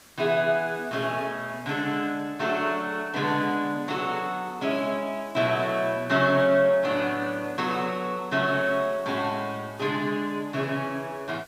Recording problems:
background hiss; slope -2 dB per octave, SNR 26 dB

